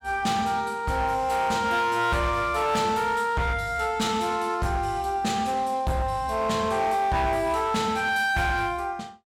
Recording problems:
distorted audio; hard clipping, signal-to-distortion ratio 11 dB

